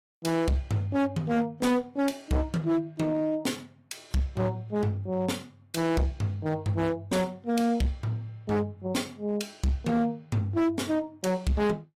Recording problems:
codec artefacts; AAC, log-spectral distance 2 dB, nothing above 14.7 kHz
distorted audio; hard clipping, uneven, signal-to-distortion ratio 8 dB

